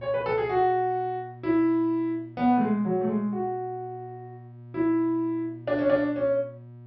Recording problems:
low-pass filter; nothing above 5.7 kHz
electrical hum; 60 Hz, harmonics up to 720 Hz, SNR 19 dB

